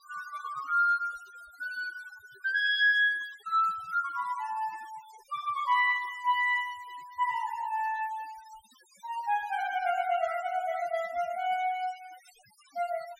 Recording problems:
denoising artefacts; signal-to-artefact ratio 23 dB

